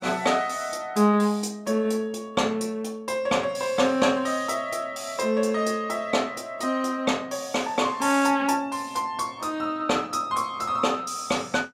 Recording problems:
none

